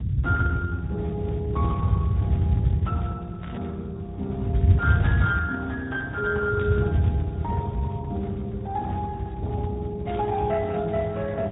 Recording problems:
treble missing; nothing above 3.6 kHz
lossy compression; Speex, log-spectral distance 2 dB
rumble; below 120 Hz, SNR -2 dB
static burst; 4 times, first at 3.5 s; peak -7 dB vs average level

